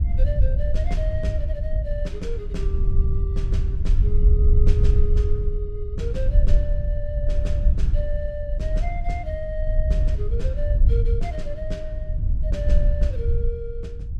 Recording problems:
rumble; below 66 Hz, SNR -10 dB

